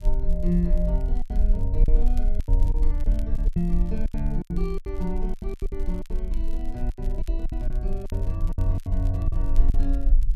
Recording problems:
low-frequency rumble; below 42 Hz, strongest tone 22 Hz, SNR -4 dB
crackling; vinyl, SNR 25 dB
lost packets; 14% of the sound replaced, filled with silence

